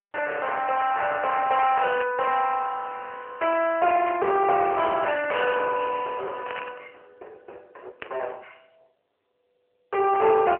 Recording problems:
telephone audio; 370 Hz to 2.7 kHz, AMR-NB
distortion; hard clipping, signal-to-distortion ratio 13 dB
burst of static; 4 times, first at 2 s; peak -5 dB vs average level

